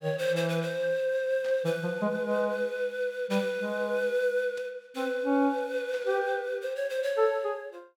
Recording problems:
burst of static; at 1.5 s, at 4.5 s and at 6 s; peak -13 dB vs average level

